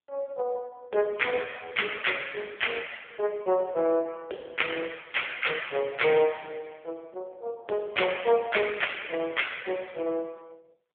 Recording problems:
telephone audio; 320 Hz to 3.4 kHz, AMR-NB

